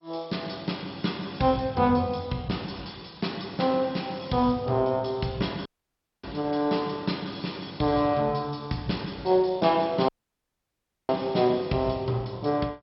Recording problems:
lossy compression; MP2, log-spectral distance 6 dB, nothing above 5.5 kHz
audio cutting out; at 5.5 s for 0.5 s and at 10 s for 1 s

